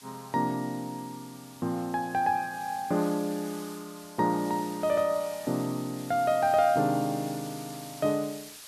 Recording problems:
hiss; slope +2 dB per octave, SNR 17 dB

